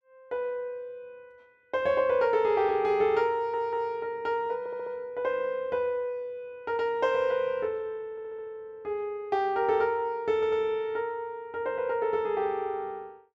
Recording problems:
stutter; 4 times, first at 3.5 s

